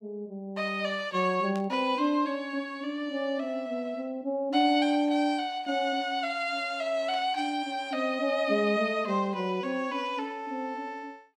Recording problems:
burst of static; at 1.5 s and at 7 s; peak -13 dB vs average level

